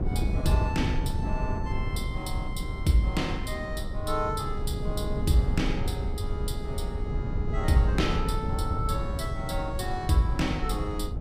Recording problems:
wind on the microphone; below 130 Hz, SNR 2 dB

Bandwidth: 15.5 kHz